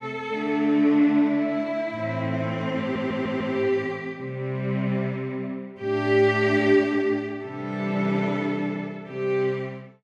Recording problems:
audio stuttering; at 3 s

